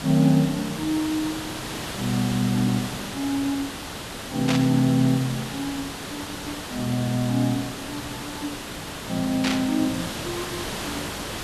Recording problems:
hiss; slope -3 dB per octave, SNR 7 dB
burst of static; at 4.5 s and at 9.5 s; peak +2 dB vs average level

